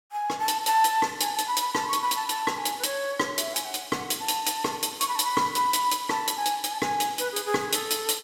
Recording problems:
none

